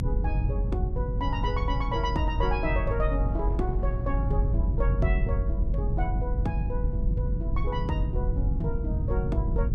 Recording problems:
rumble; below 100 Hz, strongest tone 46 Hz, SNR -4 dB
wind noise; below 290 Hz, SNR 17 dB

